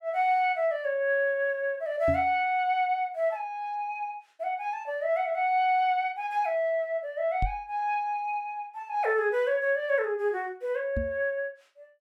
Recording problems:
knock on the microphone; at 2 s, at 7.5 s and at 11 s; peak +1 dB vs average level

